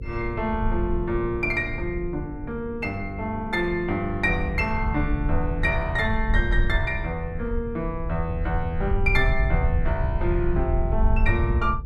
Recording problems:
hum; 50 Hz, harmonics up to 500 Hz, SNR 17 dB
low-frequency rumble; below 78 Hz, SNR 2 dB

